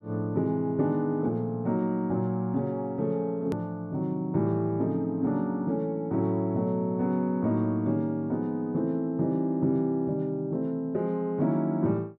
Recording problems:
edit click; at 3.5 s

